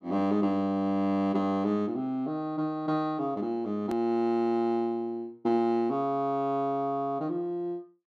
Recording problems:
edit click; at 4 s

